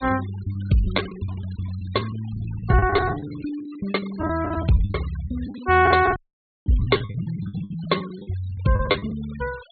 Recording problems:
low-pass filter; nothing above 4.4 kHz
denoising artefacts; signal-to-artefact ratio 18 dB
lost packets; 16% of the sound replaced, filled with the last packet
dropout; at 6 s for 0.5 s

